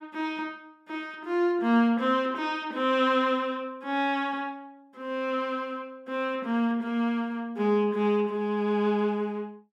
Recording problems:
none

